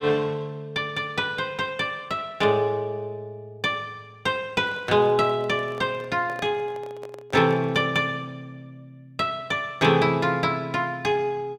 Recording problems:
microphone handling noise; from 4.5 to 8 s; peak -10 dB vs average level

